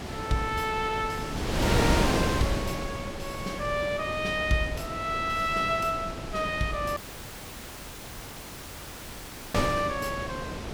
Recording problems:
wind noise; below 1.1 kHz, SNR 2 dB
dropout; at 7 s for 2.5 s

